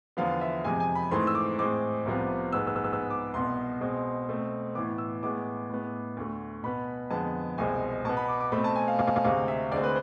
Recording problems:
stutter; at 2.5 s and at 9 s

